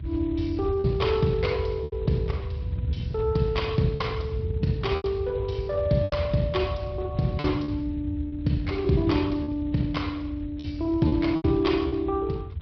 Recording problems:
low-pass filter; nothing above 5.3 kHz
lossy compression; Speex, log-spectral distance 2 dB
rumble; below 100 Hz, SNR 8 dB
wind on the microphone; below 140 Hz, SNR 11 dB
lost packets; 6% of the sound replaced, filled with repeated pitch periods

